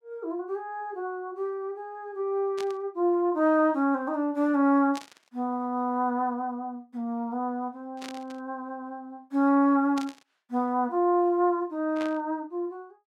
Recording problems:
burst of static; 5 times, first at 2.5 s; peak -8 dB vs average level

